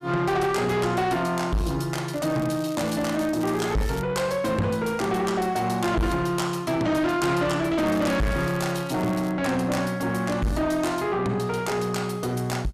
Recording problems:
distorted audio; soft clipping, signal-to-distortion ratio 7 dB
crackle; from 2 to 4 s and from 8 to 9.5 s; loose cable, SNR 19 dB

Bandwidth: 14.5 kHz